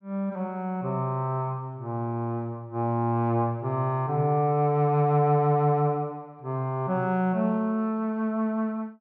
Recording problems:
none

